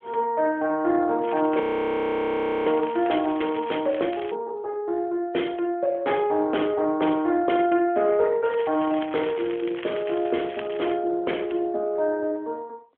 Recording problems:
phone line; 280 Hz to 3.4 kHz, AMR-NB
crackling; from 1 to 4 s, at 4 s and from 8.5 to 11 s; loose cable, SNR 16 dB
frozen audio; at 1.5 s for 1 s

